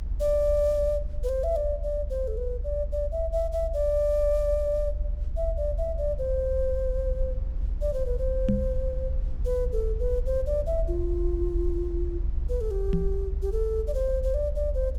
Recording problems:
rumble; below 64 Hz, strongest tone 40 Hz, SNR 3 dB
knock on the microphone; at 8.5 s and at 13 s; peak +8 dB vs average level

